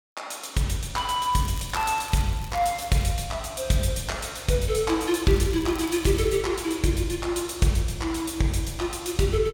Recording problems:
crackling; from 1.5 to 3 s and from 5.5 to 6.5 s; loose cable, SNR 19 dB

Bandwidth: 17 kHz